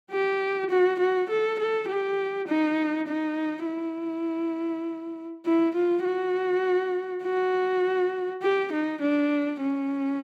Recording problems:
none

